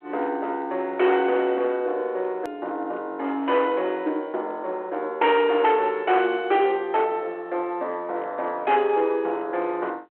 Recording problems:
phone line; 280 Hz to 3.4 kHz, G.726
distortion; hard clipping, signal-to-distortion ratio 13 dB
click at an edit; at 2.5 s

